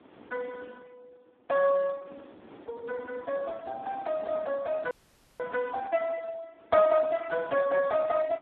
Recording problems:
phone line; 130 Hz to 2.5 kHz, Speex
wind noise; below 830 Hz, SNR 22 dB
audio cutting out; at 5 s

